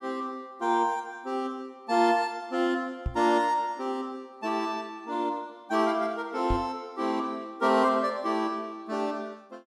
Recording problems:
knock on the microphone; at 3 s and at 6.5 s; peak 0 dB vs average level

